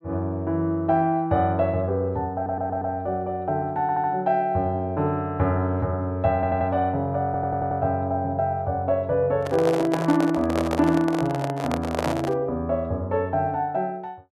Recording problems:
stutter; 4 times, first at 2.5 s
handling noise; from 9.5 to 12 s; peak +2 dB vs average level

